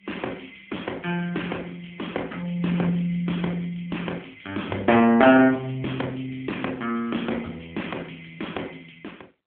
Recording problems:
phone line; 240 Hz to 3.4 kHz, AMR-NB

